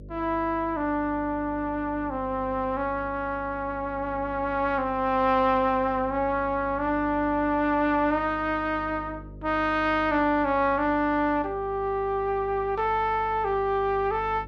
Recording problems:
mains hum; 50 Hz, harmonics up to 600 Hz, SNR 18 dB

